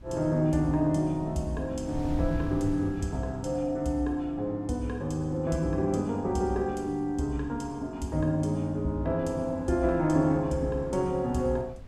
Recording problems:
wind on the microphone; below 110 Hz, SNR 17 dB

